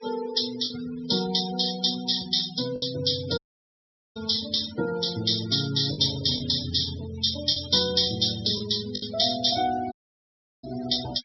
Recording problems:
treble cut off; nothing above 5.9 kHz
noise reduction artefacts; signal-to-artefact ratio 12 dB
packet loss; 3% of the sound replaced, filled with the last packet
audio cutting out; at 3.5 s for 1 s and at 10 s for 0.5 s

